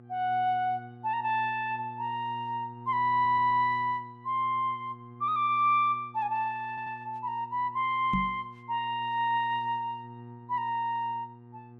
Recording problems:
electrical hum; 60 Hz, harmonics up to 1.2 kHz, SNR 19 dB
stutter; at 3 s and at 6.5 s
microphone bump; at 8 s; peak +2 dB vs average level

